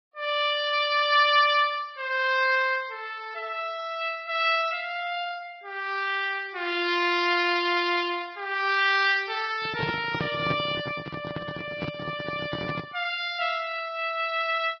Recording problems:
lossy compression; Vorbis, log-spectral distance 4 dB, nothing above 5.2 kHz
microphone handling noise; from 9.5 to 13 s; peak 0 dB vs average level

